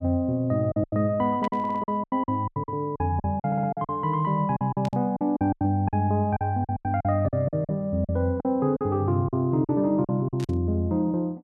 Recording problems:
lost packets; 14% of the sound replaced, filled with silence
burst of static; at 1.5 s, at 5 s and at 10 s; peak -11 dB vs average level
audio stuttering; at 1.5 s and at 3.5 s

